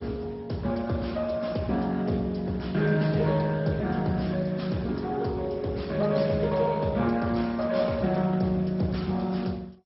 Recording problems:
lossy codec; Speex, then MP2, log-spectral distance 4 dB, nothing above 5.5 kHz

